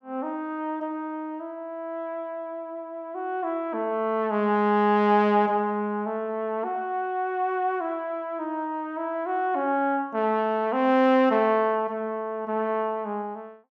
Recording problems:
none

